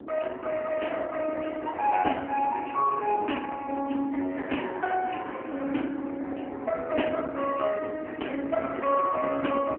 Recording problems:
phone line; 240 Hz to 3 kHz, AMR-NB
wind on the microphone; below 390 Hz, SNR 11 dB

